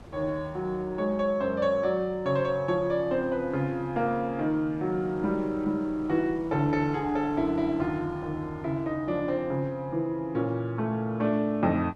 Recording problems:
wind noise; below 590 Hz, SNR 21 dB

